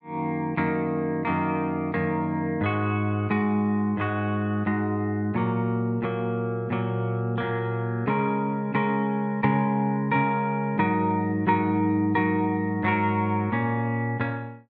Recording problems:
none

